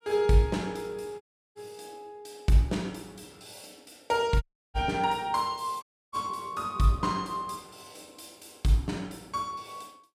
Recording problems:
audio cutting out; at 1 s, at 4.5 s and at 6 s

